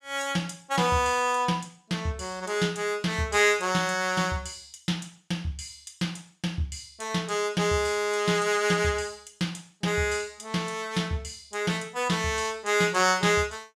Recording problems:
none

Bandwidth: 14.5 kHz